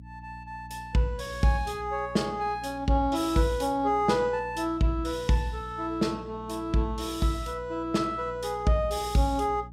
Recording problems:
hum; 60 Hz, harmonics up to 300 Hz, SNR 18 dB

